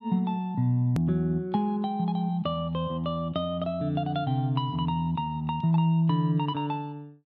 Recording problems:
click at an edit; at 1 s

